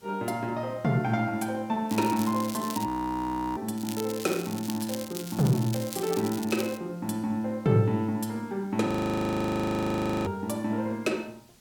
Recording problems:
hiss; SNR 28 dB
crackle; at 2 s and from 4 to 7 s; loose cable, SNR 11 dB
audio freezing; at 3 s for 0.5 s and at 9 s for 1.5 s

